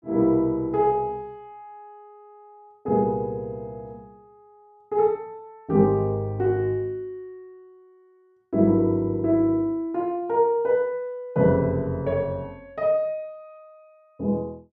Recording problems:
none

